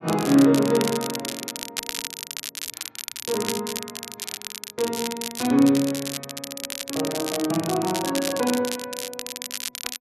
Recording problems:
crackle; vinyl, SNR 8 dB

